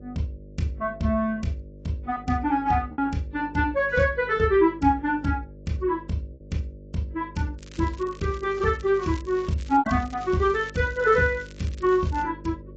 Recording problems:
lossy compression; AAC, log-spectral distance 2 dB, nothing above 7.3 kHz
hum; 50 Hz, harmonics up to 600 Hz, SNR 20 dB
packet loss; 1.4% of the sound replaced, filled with repeated pitch periods
crackling; from 7.5 to 12 s; loose cable, SNR 23 dB

